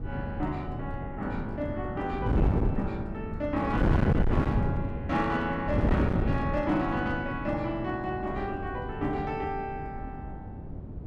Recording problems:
distortion; hard clipping, uneven, signal-to-distortion ratio 8 dB
wind on the microphone; below 250 Hz, SNR 0 dB

